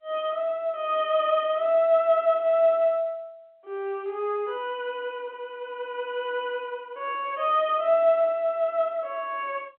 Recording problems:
telephone audio; 240 Hz to 3.3 kHz, G.711

